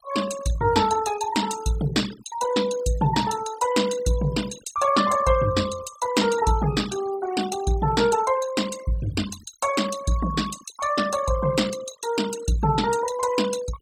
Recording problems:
denoising artefacts; signal-to-artefact ratio 13 dB

